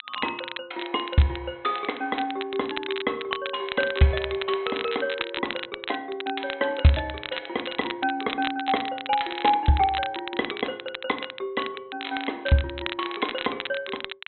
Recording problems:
treble missing; nothing above 4 kHz
crackling; vinyl, SNR 8 dB

